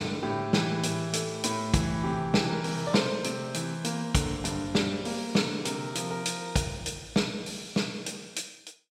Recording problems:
none

